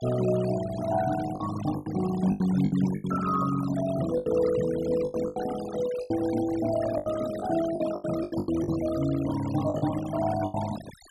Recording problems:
noise reduction artefacts; signal-to-artefact ratio 13 dB
packet loss; 11% of the sound replaced, filled with the last packet

